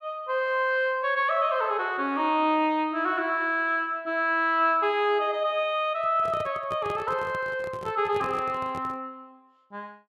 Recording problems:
microphone handling noise; from 6 to 9 s; peak -8 dB vs average level

